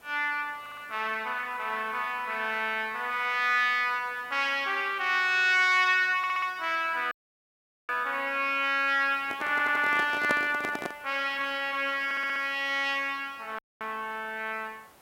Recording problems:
hiss; SNR 27 dB
stutter; 4 times, first at 0.5 s
dropout; at 7 s for 1 s and at 14 s
handling noise; from 9.5 to 11 s; peak +1 dB vs average level

